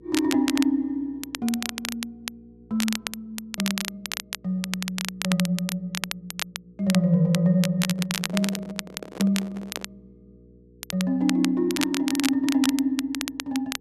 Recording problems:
hum; 60 Hz, harmonics up to 480 Hz, SNR 28 dB
crackling; vinyl, SNR 7 dB
microphone handling noise; from 8 to 10 s; peak -4 dB vs average level

